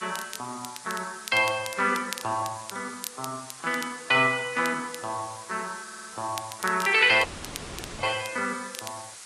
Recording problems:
codec artefacts; AAC, log-spectral distance 16 dB
background hiss; slope +2 dB per octave, SNR 16 dB
crackle; vinyl, SNR 15 dB
stutter; at 6 s
dropout; at 7 s for 1 s

